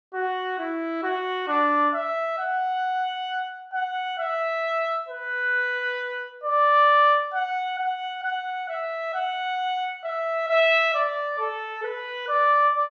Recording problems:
none

